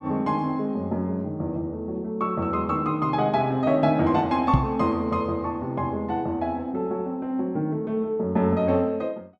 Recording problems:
microphone bump; at 4.5 s; peak +9 dB vs average level

